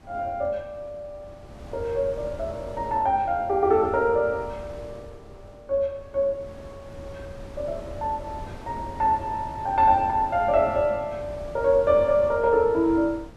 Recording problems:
wind noise; below 460 Hz, SNR 18 dB

